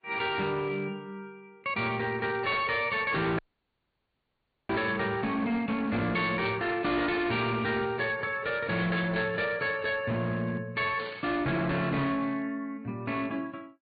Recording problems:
low-pass filter; nothing above 4.5 kHz
codec artefacts; AAC, log-spectral distance 2 dB
distortion; hard clipping, signal-to-distortion ratio 11 dB
static burst; at 2.5 s, at 6.5 s and at 11 s; peak -7 dB vs average level
dropout; at 3.5 s for 1.5 s

